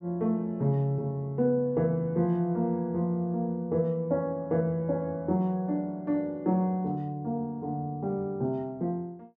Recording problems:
none

